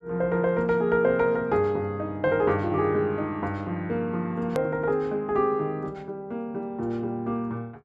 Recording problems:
hard cut with a click; at 4.5 s

